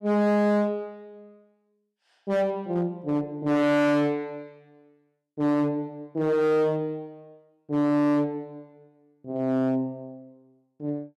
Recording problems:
distorted audio; hard clipping, signal-to-distortion ratio 6 dB

